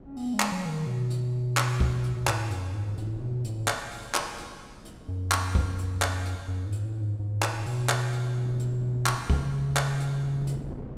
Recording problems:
wind noise; below 320 Hz, SNR 18 dB

